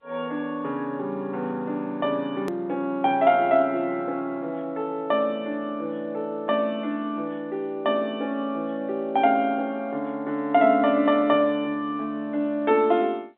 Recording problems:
phone line; 170 Hz to 3.6 kHz, G.711
click at an edit; at 2.5 s

